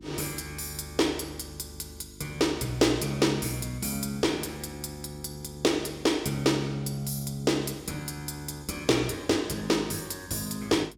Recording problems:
hum; 50 Hz, harmonics up to 350 Hz, SNR 22 dB

